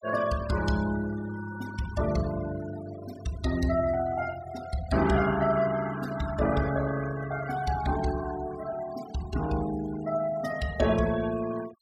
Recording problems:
noise reduction artefacts; signal-to-artefact ratio 14 dB

